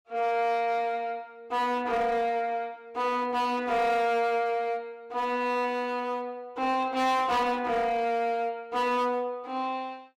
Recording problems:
distorted audio; hard clipping, uneven, signal-to-distortion ratio 11 dB

